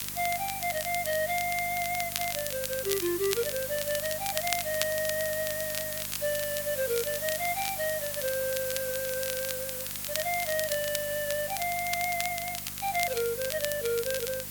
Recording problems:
hum; 50 Hz, harmonics up to 600 Hz, SNR 18 dB
background hiss; slope +1 dB per octave, SNR 2 dB
crackling; vinyl, SNR 6 dB

